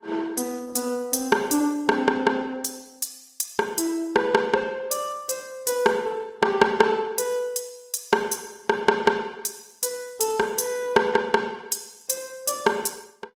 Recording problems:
codec artefacts; Opus, log-spectral distance 5 dB

